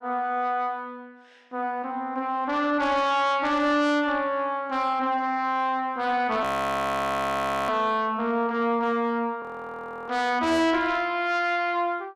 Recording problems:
distorted audio; soft clipping, signal-to-distortion ratio 11 dB
audio freezing; at 6.5 s for 1.5 s and at 9.5 s for 0.5 s

